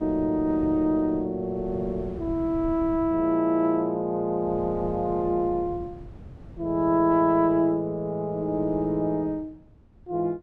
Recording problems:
wind on the microphone; below 200 Hz, SNR 17 dB

